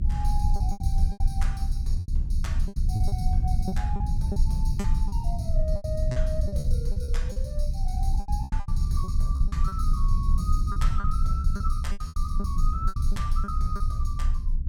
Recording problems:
rumble; below 66 Hz, strongest tone 28 Hz, SNR -9 dB
lost packets; 13% of the sound replaced, filled with repeated pitch periods

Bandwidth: 17.5 kHz